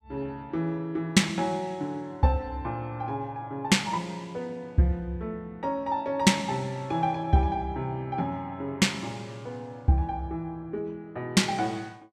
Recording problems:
none

